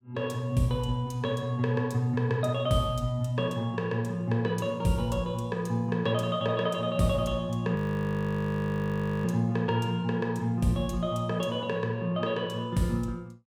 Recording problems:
audio freezing; at 8 s for 1.5 s

